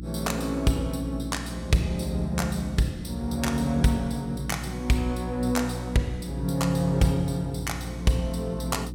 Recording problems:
hum; 60 Hz, harmonics up to 360 Hz, SNR 9 dB

